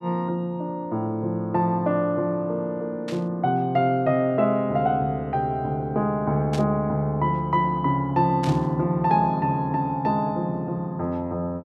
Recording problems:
static burst; at 3 s, at 6.5 s and at 8.5 s; peak -8 dB vs average level

